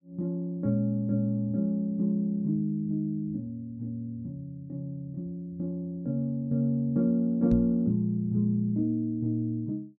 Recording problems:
knock on the microphone; at 7.5 s; peak +2 dB vs average level

